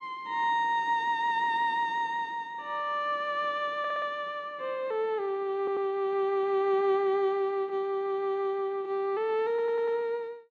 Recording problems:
audio stuttering; at 4 s, at 5.5 s and at 9.5 s

